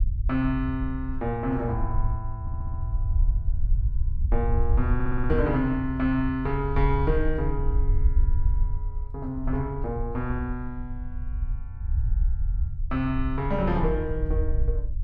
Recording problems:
low-frequency rumble; below 64 Hz, SNR 1 dB
stutter; at 2.5 s and at 5 s

